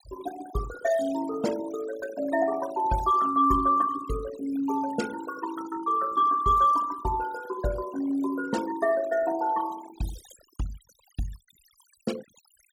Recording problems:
denoising artefacts; signal-to-artefact ratio 15 dB

